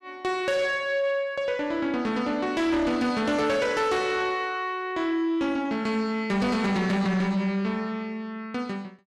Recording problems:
distortion; soft clipping, signal-to-distortion ratio 11 dB

